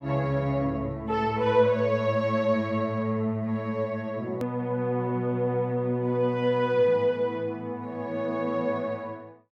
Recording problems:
hard cut with a click; at 4.5 s

